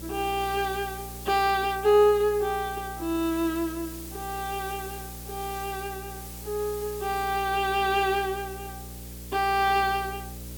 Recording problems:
hum; 60 Hz, harmonics up to 600 Hz, SNR 16 dB
hiss; slope 0 dB per octave, SNR 15 dB

